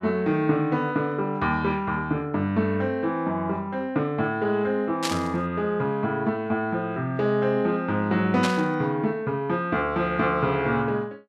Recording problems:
static burst; at 5 s and at 8.5 s; peak +2 dB vs average level

